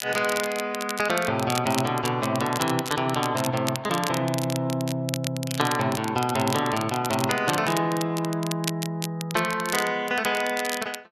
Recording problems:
crackling; vinyl, SNR 8 dB

